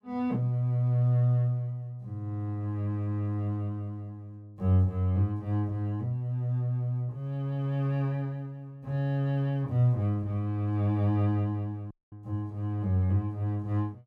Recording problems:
dropout; at 12 s

